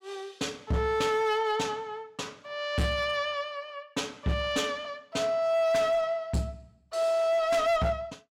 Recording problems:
distortion; hard clipping, signal-to-distortion ratio 12 dB

